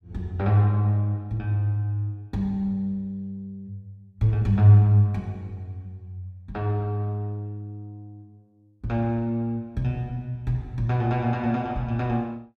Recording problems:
none

